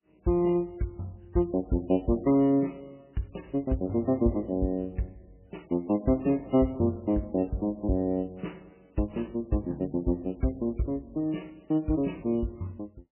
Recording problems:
lossy codec; MP3, log-spectral distance 3 dB, nothing above 2.9 kHz

